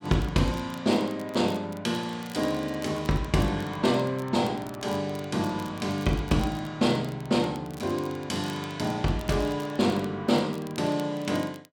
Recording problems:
crackling; vinyl, SNR 23 dB

